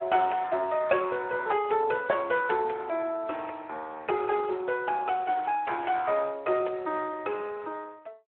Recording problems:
phone line; 320 Hz to 3.3 kHz, Speex

